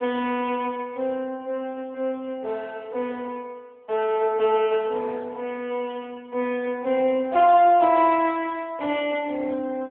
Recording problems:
phone line; 260 Hz to 3.4 kHz, AMR-NB

